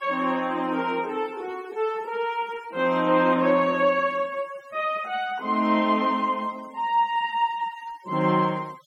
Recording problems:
denoising artefacts; signal-to-artefact ratio 25 dB

